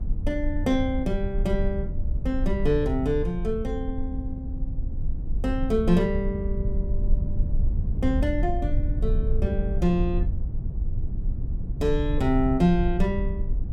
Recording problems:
rumble; below 72 Hz, SNR 2 dB

